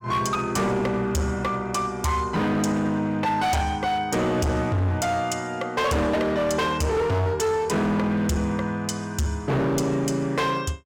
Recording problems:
distortion; hard clipping, signal-to-distortion ratio 7 dB

